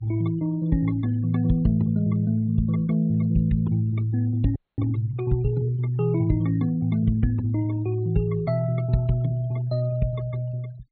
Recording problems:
treble missing; nothing above 4.4 kHz
noise reduction artefacts; signal-to-artefact ratio 26 dB
frozen audio; at 4.5 s

